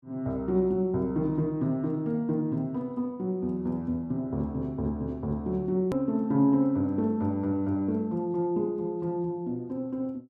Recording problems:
hard cut with a click; at 6 s

